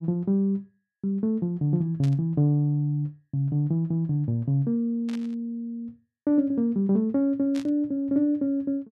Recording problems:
burst of static; at 2 s, at 5 s and at 7.5 s; peak -12 dB vs average level

